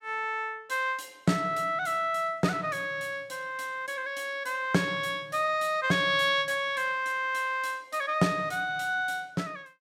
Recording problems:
none

